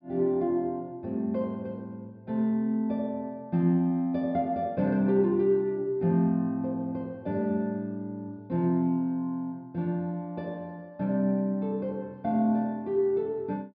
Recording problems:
low-pass filter; nothing above 5.4 kHz

